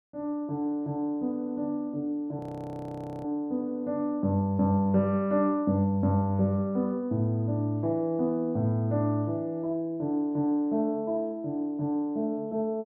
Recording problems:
frozen audio; at 2.5 s for 1 s

